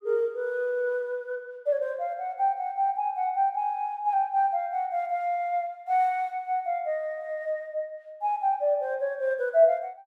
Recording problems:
none

